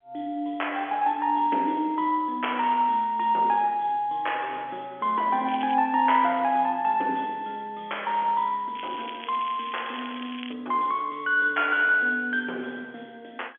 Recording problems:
phone line; 260 Hz to 3.4 kHz, G.711
crackling; at 5.5 s and from 9 to 11 s; loose cable, SNR 15 dB

